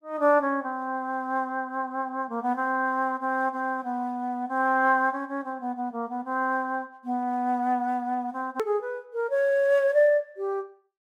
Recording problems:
click at an edit; at 8.5 s

